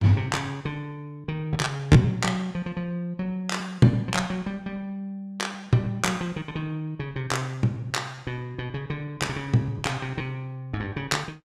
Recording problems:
lost packets; 8% of the sound replaced, filled with repeated pitch periods

